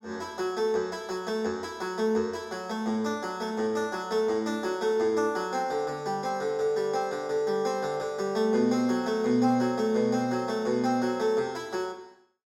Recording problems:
none

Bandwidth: 16.5 kHz